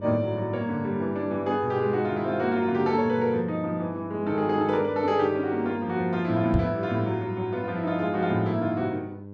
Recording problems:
hum; 50 Hz, harmonics up to 900 Hz, SNR 14 dB
microphone bump; at 6.5 s; peak +5 dB vs average level

